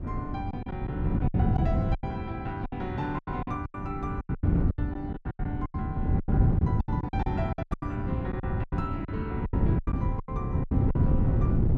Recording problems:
wind on the microphone; below 180 Hz, SNR -6 dB
lost packets; 17% of the sound replaced, filled with silence

